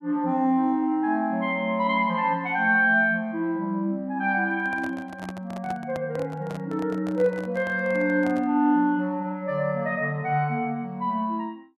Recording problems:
microphone handling noise; from 4.5 to 8.5 s; peak -9 dB vs average level

